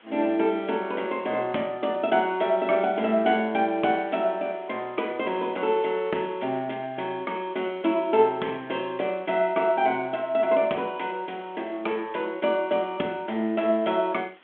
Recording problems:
telephone audio; 240 Hz to 3.4 kHz, G.726
background hiss; SNR 27 dB

